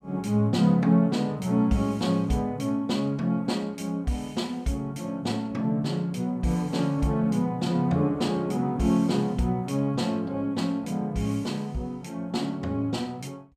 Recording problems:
none

